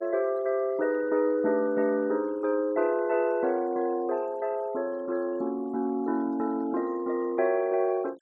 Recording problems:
denoising artefacts; signal-to-artefact ratio 26 dB

